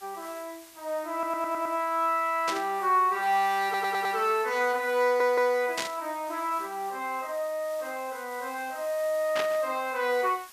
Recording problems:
background hiss; slope +2 dB per octave, SNR 20 dB
audio stuttering; at 1 s, at 3.5 s and at 5 s
static burst; at 2.5 s, at 6 s and at 9.5 s; peak +1 dB vs average level

